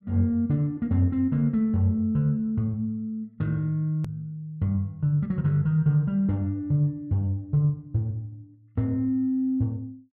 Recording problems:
click at an edit; at 4 s

